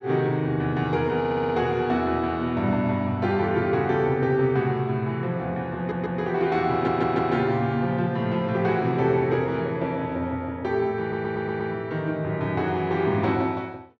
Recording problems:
stutter; 4 times, first at 1 s

